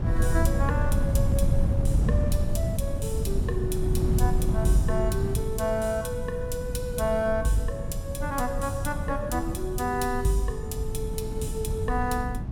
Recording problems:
wind on the microphone; below 130 Hz, SNR -1 dB

